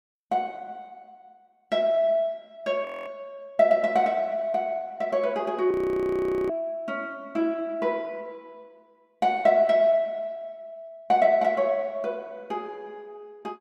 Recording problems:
audio freezing; at 3 s and at 5.5 s for 1 s

